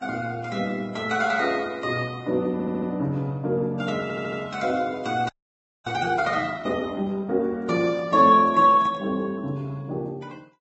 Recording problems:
low-pass filter; nothing above 7.8 kHz
lossy compression; Vorbis, log-spectral distance 2 dB
audio stuttering; at 2.5 s and at 4 s
frozen audio; at 5.5 s for 0.5 s
microphone handling noise; from 7.5 to 9 s; peak -10 dB vs average level

